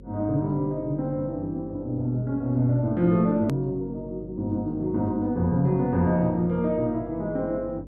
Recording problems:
electrical hum; 50 Hz, harmonics up to 550 Hz, SNR 19 dB
edit click; at 3.5 s

